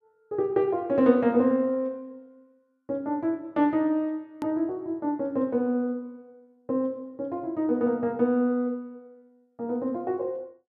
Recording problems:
click at an edit; at 4.5 s

